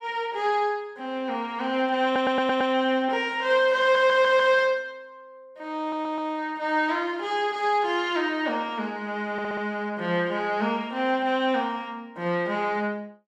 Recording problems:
stutter; 4 times, first at 2 s

